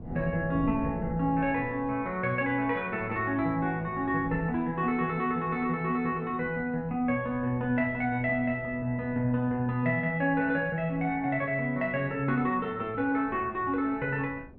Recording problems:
wind on the microphone; below 290 Hz, SNR 17 dB

